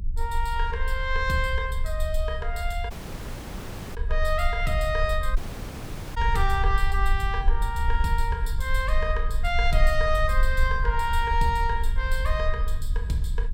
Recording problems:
rumble; below 54 Hz, strongest tone 24 Hz, SNR 1 dB
audio cutting out; at 3 s for 1 s and at 5.5 s for 1 s

